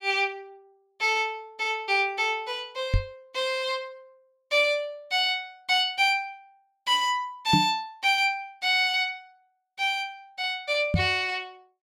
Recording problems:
microphone thump; at 3 s, at 7.5 s and at 11 s; peak +5 dB vs average level

